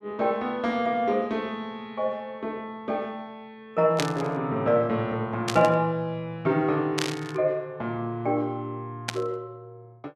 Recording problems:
burst of static; 4 times, first at 4 s; peak +3 dB vs average level

